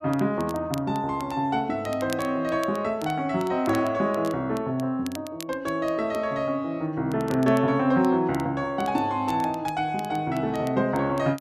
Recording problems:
crackle; vinyl, SNR 21 dB

